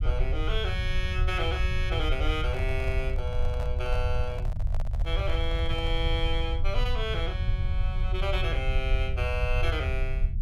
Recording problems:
rumble; below 76 Hz, SNR -3 dB
microphone handling noise; from 2.5 to 6 s; peak -6 dB vs average level

